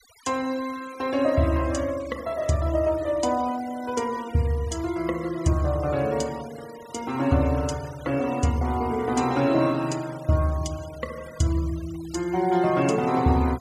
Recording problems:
noise reduction artefacts; signal-to-artefact ratio 20 dB

